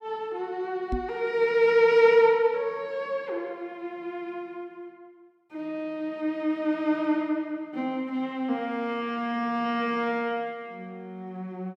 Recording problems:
microphone bump; at 1 s; peak -1 dB vs average level

